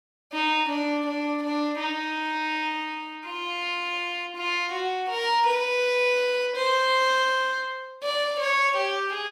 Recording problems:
none

